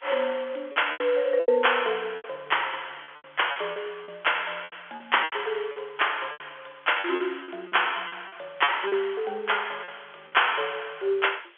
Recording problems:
phone line; 300 Hz to 3.4 kHz, G.711
background hiss; SNR 30 dB
lost packets; 11% of the sound replaced, filled with repeated pitch periods

